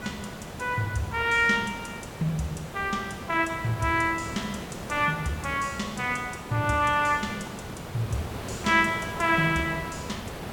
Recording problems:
hiss; slope -6 dB per octave, SNR 11 dB

